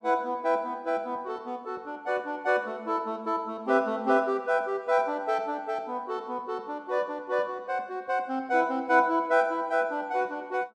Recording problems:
none

